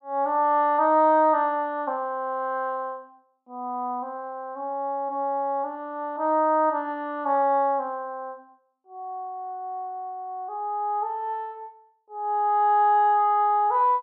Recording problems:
none

